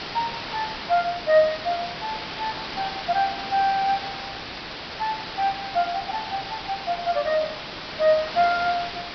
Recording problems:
treble missing; nothing above 5.5 kHz
hiss; SNR 7 dB

